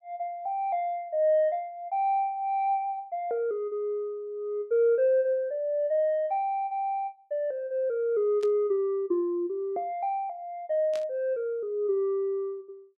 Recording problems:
burst of static; at 8.5 s and at 11 s; peak -11 dB vs average level

